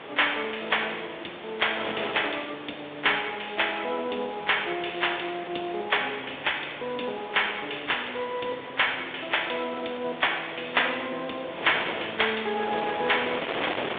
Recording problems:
phone line; 300 Hz to 3.6 kHz, G.726
background hiss; SNR 25 dB
wind noise; below 2.6 kHz, SNR 10 dB

